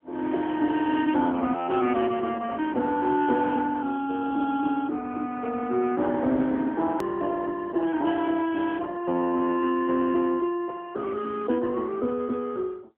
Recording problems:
telephone audio; 220 Hz to 3.4 kHz, AMR-NB
hard cut with a click; at 7 s

